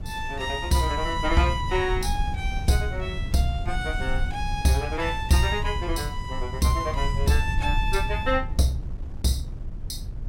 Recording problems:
low-frequency rumble; below 82 Hz, SNR 6 dB
wind on the microphone; below 220 Hz, SNR 18 dB

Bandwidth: 16.5 kHz